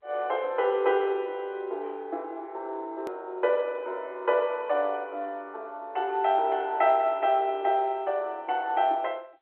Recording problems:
telephone audio; 300 Hz to 3.3 kHz, G.711
edit click; at 3 s

